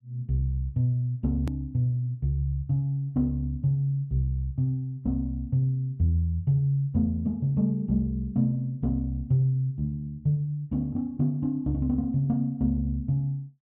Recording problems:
hard cut with a click; at 1.5 s

